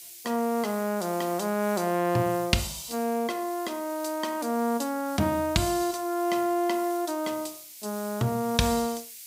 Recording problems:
background hiss; SNR 15 dB

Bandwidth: 15.5 kHz